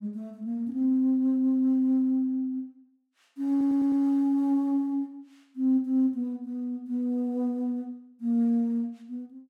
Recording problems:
audio stuttering; at 3.5 s

